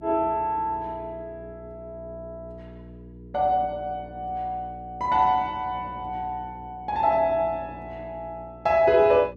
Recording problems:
electrical hum; 60 Hz, harmonics up to 480 Hz, SNR 19 dB

